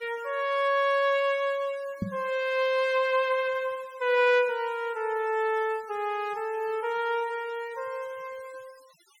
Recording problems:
denoising artefacts; signal-to-artefact ratio 25 dB
microphone thump; at 2 s; peak +1 dB vs average level

